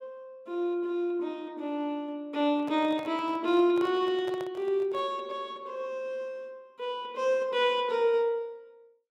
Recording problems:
handling noise; from 2.5 to 5 s; peak -9 dB vs average level

